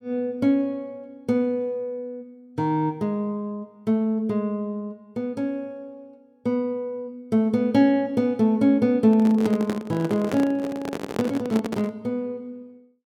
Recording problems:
microphone handling noise; from 9 to 12 s; peak -1 dB vs average level

